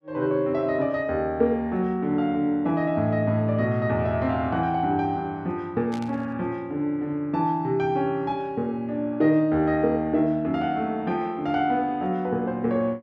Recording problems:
static burst; at 6 s; peak -12 dB vs average level

